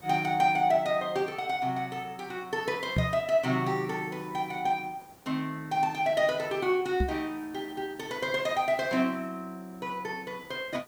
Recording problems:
hiss; SNR 25 dB
microphone thump; at 3 s and at 7 s; peak +5 dB vs average level

